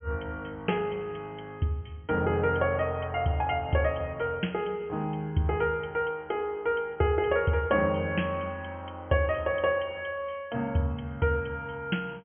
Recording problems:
low-pass filter; nothing above 3.3 kHz

